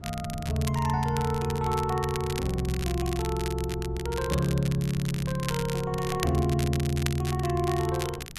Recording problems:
wind noise; below 170 Hz, SNR 15 dB
crackle; vinyl, SNR 11 dB

